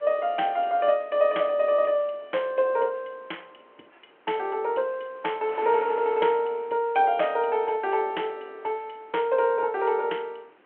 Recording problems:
telephone audio; 280 Hz to 3.3 kHz, G.726
wind on the microphone; below 1.9 kHz, SNR 25 dB

